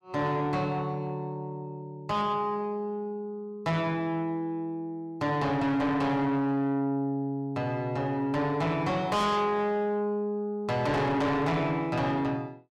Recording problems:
distorted audio; soft clipping, signal-to-distortion ratio 8 dB

